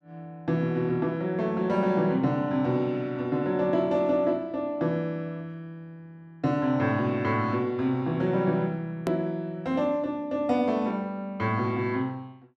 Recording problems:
edit click; at 9 s

